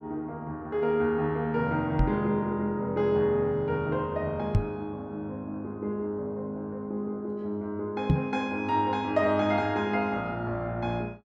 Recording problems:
knock on the microphone; at 2 s, at 4.5 s and at 8 s; peak +10 dB vs average level

